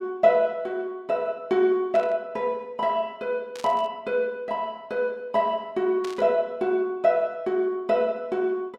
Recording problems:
static burst; at 2 s, at 3.5 s and at 6 s; peak -10 dB vs average level

